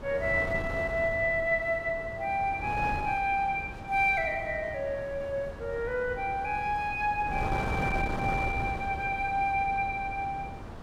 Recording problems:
wind on the microphone; below 640 Hz, SNR 9 dB

